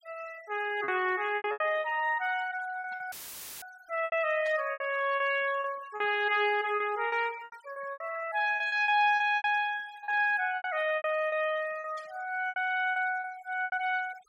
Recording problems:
denoising artefacts; signal-to-artefact ratio 21 dB
lost packets; 13% of the sound replaced, filled with repeated pitch periods
burst of static; 5 times, first at 3 s; peak -17 dB vs average level
dropout; at 3 s for 0.5 s; filled with static

